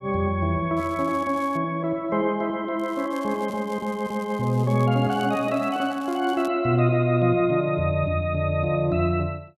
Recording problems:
crackling; at 1 s and from 3 to 6.5 s; loose cable, SNR 25 dB

